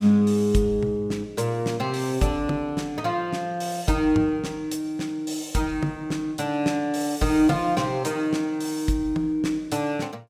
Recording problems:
none

